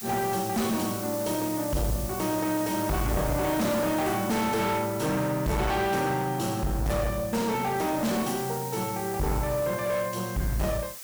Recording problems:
distortion; hard clipping, uneven, signal-to-distortion ratio 8 dB
background hiss; slope +2 dB per octave, SNR 10 dB

